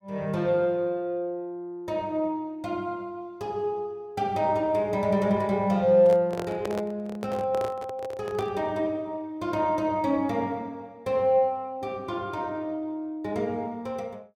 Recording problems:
microphone handling noise; from 6 to 8.5 s; peak -1 dB vs average level

